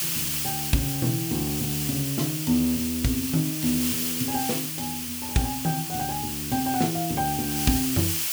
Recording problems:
hiss; SNR 1 dB

